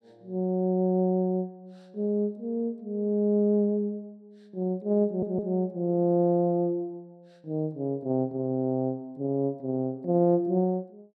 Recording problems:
stutter; at 5 s

